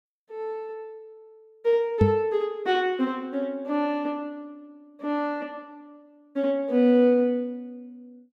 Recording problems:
microphone bump; at 2 s; peak +8 dB vs average level

